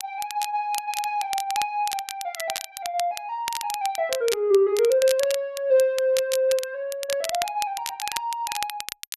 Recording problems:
crackle; vinyl, SNR 9 dB

